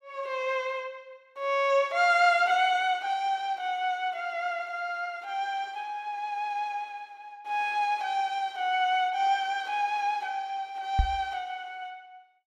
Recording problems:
microphone thump; at 11 s; peak +6 dB vs average level

